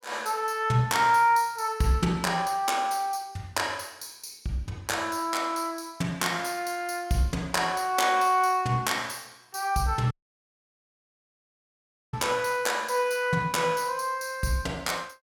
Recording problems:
audio cutting out; at 10 s for 2 s

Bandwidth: 17 kHz